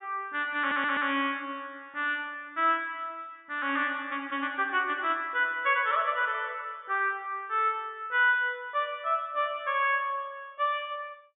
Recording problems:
treble missing; nothing above 4 kHz
stutter; at 0.5 s

